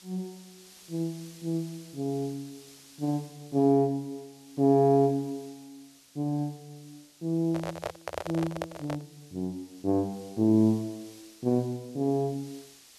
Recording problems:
background hiss; slope +1 dB per octave, SNR 23 dB
microphone handling noise; from 7.5 to 9 s; peak -1 dB vs average level

